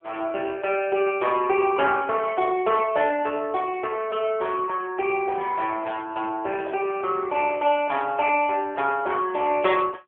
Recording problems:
phone line; 300 Hz to 3.4 kHz, AMR-NB

